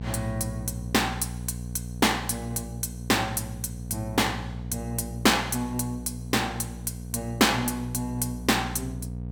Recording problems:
hum; 60 Hz, harmonics up to 720 Hz, SNR 9 dB

